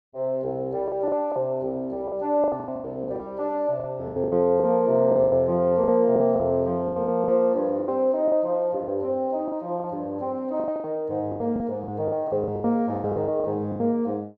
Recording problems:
lost packets; 15% of the sound replaced, filled with the last packet

